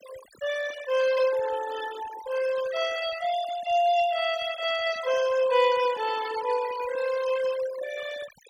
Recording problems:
denoising artefacts; signal-to-artefact ratio 14 dB

